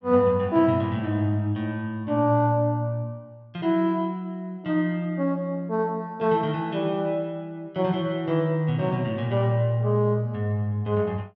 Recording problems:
treble cut off; nothing above 8 kHz

